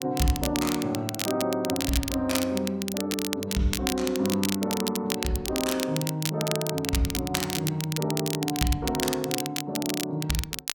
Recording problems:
crackle; vinyl, SNR 4 dB

